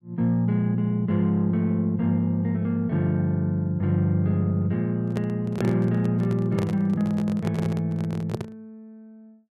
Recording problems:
handling noise; from 5 to 8.5 s; peak -2 dB vs average level

